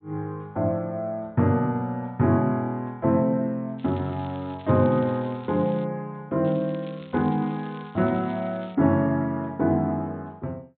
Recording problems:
low-pass filter; nothing above 4 kHz
crackle; from 4 to 6 s and from 6.5 to 9 s; loose cable, SNR 27 dB

